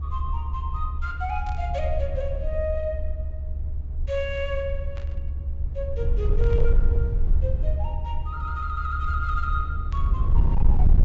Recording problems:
treble missing; nothing above 8 kHz
distortion; hard clipping, uneven, signal-to-distortion ratio 10 dB
rumble; below 72 Hz, SNR -5 dB
burst of static; 4 times, first at 1.5 s; peak -10 dB vs average level

